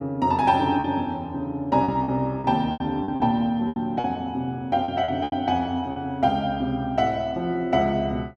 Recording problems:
lost packets; 8% of the sound replaced, filled with repeated pitch periods

